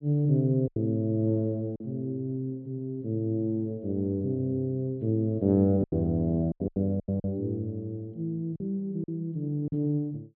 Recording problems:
treble missing; nothing above 4.2 kHz
packet loss; 6% of the sound replaced, filled with silence

